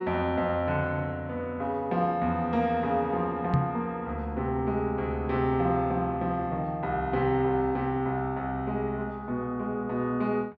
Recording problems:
microphone bump; at 3.5 s; peak +6 dB vs average level

